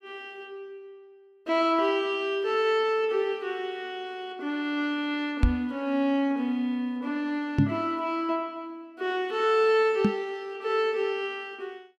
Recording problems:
microphone bump; at 5.5 s, at 7.5 s and at 10 s; peak +9 dB vs average level

